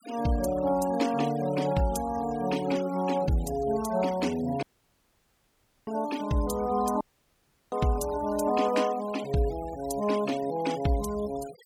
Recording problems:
denoising artefacts; signal-to-artefact ratio 18 dB
dropout; at 4.5 s for 1 s and at 7 s for 0.5 s

